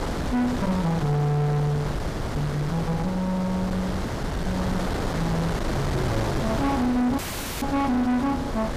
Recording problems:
distortion; soft clipping, signal-to-distortion ratio 10 dB
wind noise; below 790 Hz, SNR 3 dB
audio cutting out; at 7 s

